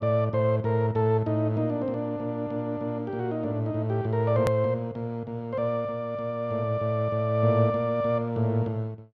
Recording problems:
click at an edit; at 4.5 s

